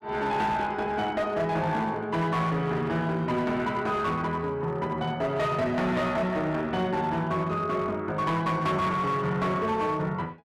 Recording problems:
distorted audio; hard clipping, uneven, signal-to-distortion ratio 12 dB

